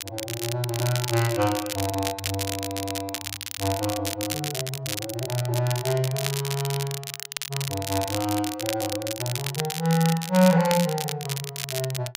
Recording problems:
crackling; vinyl, SNR 5 dB

